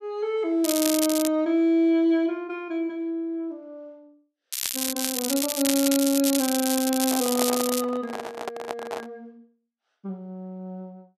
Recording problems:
crackle; at 0.5 s and from 4.5 to 8 s; loose cable, SNR 3 dB
handling noise; from 7 to 9 s; peak -1 dB vs average level

